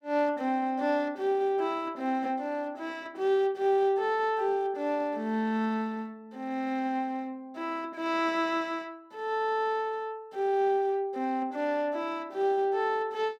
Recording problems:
none

